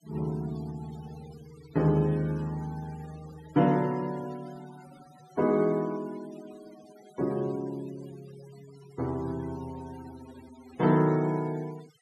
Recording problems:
denoising artefacts; signal-to-artefact ratio 22 dB

